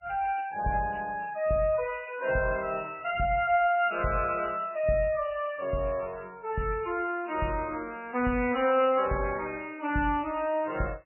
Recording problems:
lossy compression; MP3, log-spectral distance 5 dB, nothing above 2.6 kHz

